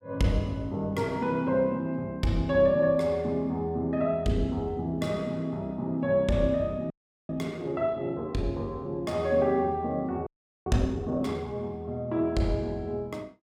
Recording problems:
frozen audio; at 7 s and at 10 s

